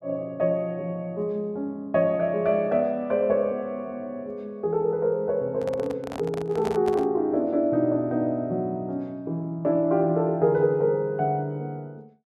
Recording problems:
handling noise; from 5.5 to 7 s; peak -5 dB vs average level

